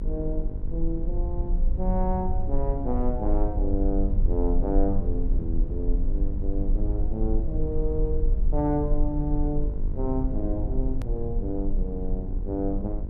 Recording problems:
hum; 50 Hz, harmonics up to 1 kHz, SNR 11 dB
rumble; below 48 Hz, SNR -1 dB
hard cut with a click; at 11 s

